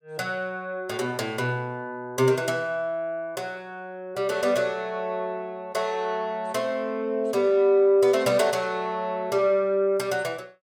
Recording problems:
none

